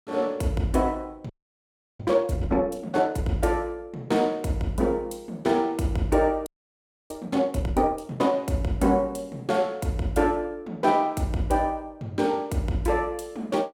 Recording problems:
audio freezing; at 1.5 s for 0.5 s and at 6.5 s for 0.5 s

